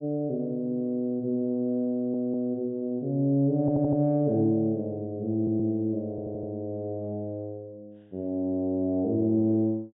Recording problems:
low-pass filter; nothing above 4 kHz
audio stuttering; 4 times, first at 2 s

